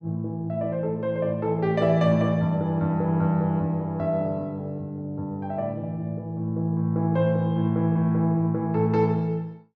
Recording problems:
none

